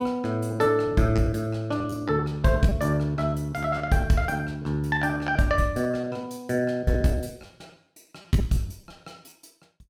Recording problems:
lost packets; 13% of the sound replaced, filled with repeated pitch periods

